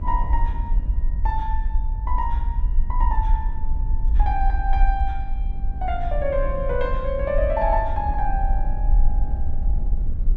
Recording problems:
hum; 50 Hz, harmonics up to 600 Hz, SNR 17 dB
rumble; below 50 Hz, SNR -2 dB
wind noise; below 140 Hz, SNR 10 dB

